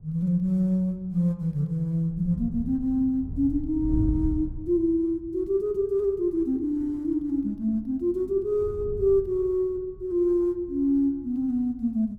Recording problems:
wind on the microphone; below 120 Hz, SNR 12 dB

